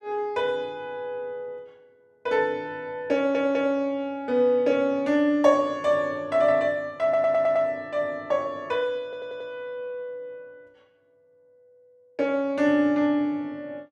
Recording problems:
audio stuttering; at 3 s, at 7 s and at 9 s

